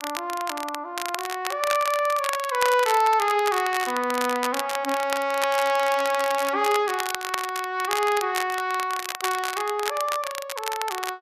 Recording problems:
crackle; vinyl, SNR 8 dB

